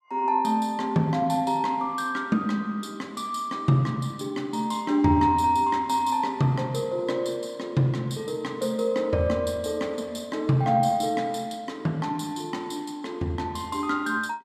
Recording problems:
none

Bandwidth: 14.5 kHz